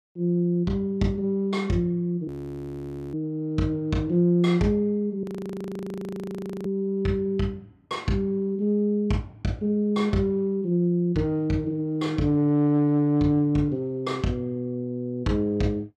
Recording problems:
frozen audio; at 2.5 s for 1 s and at 5 s for 1.5 s

